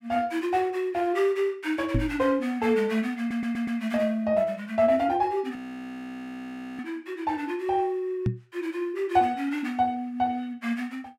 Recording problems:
knock on the microphone; at 2 s and at 8.5 s; peak +4 dB vs average level
audio stuttering; at 3 s
audio freezing; at 5.5 s for 1 s

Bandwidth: 16 kHz